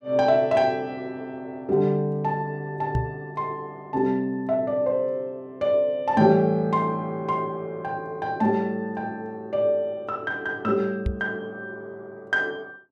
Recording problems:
microphone thump; at 3 s and at 11 s; peak +3 dB vs average level

